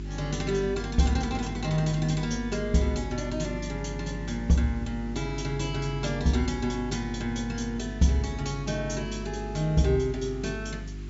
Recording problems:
treble missing; nothing above 7.4 kHz
hum; 50 Hz, harmonics up to 400 Hz, SNR 9 dB
hiss; slope -1 dB per octave, SNR 25 dB

